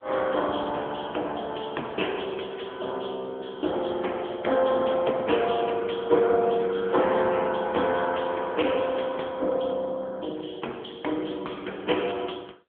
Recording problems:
telephone audio; 280 Hz to 3.3 kHz, AMR-NB

